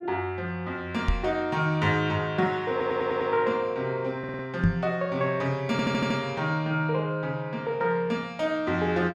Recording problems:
knock on the microphone; at 1 s and at 4.5 s; peak +7 dB vs average level
stutter; at 2.5 s, at 4 s and at 5.5 s

